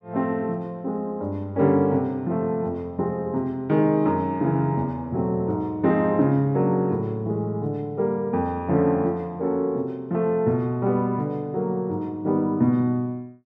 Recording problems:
none

